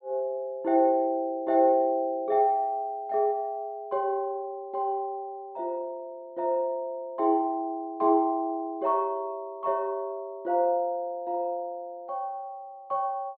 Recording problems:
low-pass filter; nothing above 4.5 kHz

